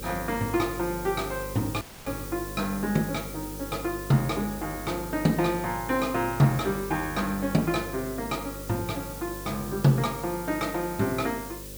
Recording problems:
electrical hum; 50 Hz, harmonics up to 550 Hz, SNR 13 dB
hiss; slope +1 dB per octave, SNR 12 dB
dropout; at 2 s

